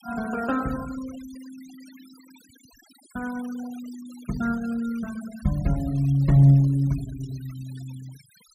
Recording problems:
noise reduction artefacts; signal-to-artefact ratio 23 dB

